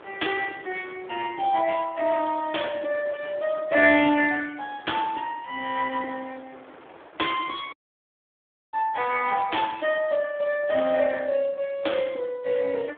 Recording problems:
telephone audio; 260 Hz to 3.5 kHz, Speex
wind noise; below 1.4 kHz, SNR 24 dB
audio cutting out; at 7.5 s for 1 s

